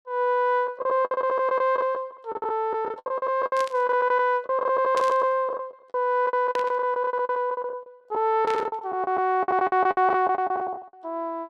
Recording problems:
lost packets; 18% of the sound replaced, filled with the last packet
static burst; 4 times, first at 3.5 s; peak -7 dB vs average level

